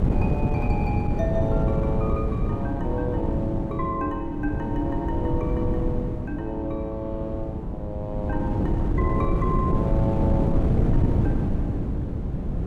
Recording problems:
wind noise; below 220 Hz, SNR -5 dB

